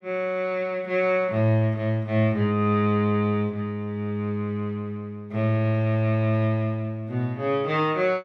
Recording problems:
none

